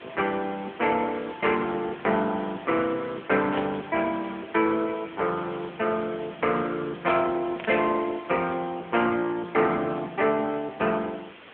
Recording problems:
phone line; 190 Hz to 3.3 kHz, AMR-NB
hiss; SNR 19 dB
burst of static; at 3.5 s and at 7.5 s; peak -7 dB vs average level

